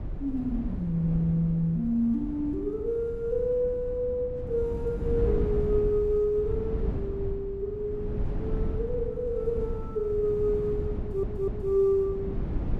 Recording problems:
wind on the microphone; below 160 Hz, SNR 7 dB
audio stuttering; at 11 s

